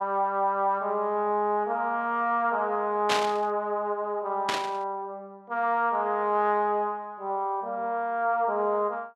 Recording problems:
burst of static; at 3 s and at 4.5 s; peak +4 dB vs average level

